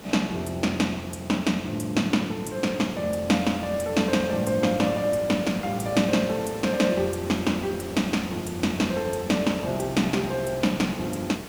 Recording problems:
background hiss; slope -5 dB per octave, SNR 13 dB

